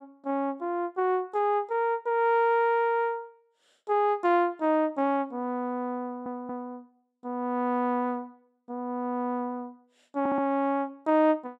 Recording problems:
stutter; at 6 s and at 10 s

